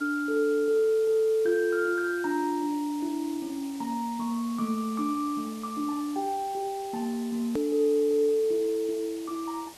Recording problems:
background hiss; SNR 19 dB
click at an edit; at 7.5 s

